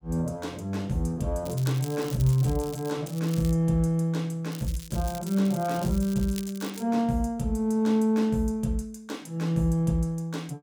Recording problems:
crackle; from 1.5 to 3 s, at 3 s and from 4.5 to 7 s; loose cable, SNR 16 dB

